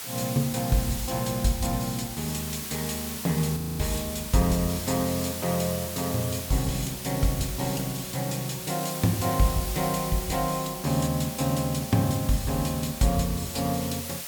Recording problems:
background hiss; slope +1 dB per octave, SNR 7 dB
frozen audio; at 3.5 s

